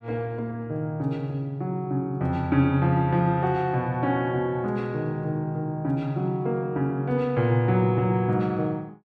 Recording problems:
none

